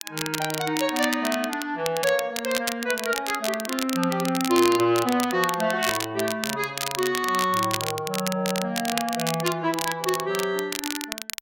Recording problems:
crackle; vinyl, SNR 6 dB

